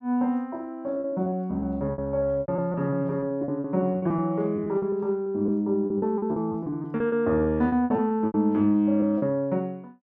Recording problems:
packet loss; 15% of the sound replaced, filled with repeated pitch periods

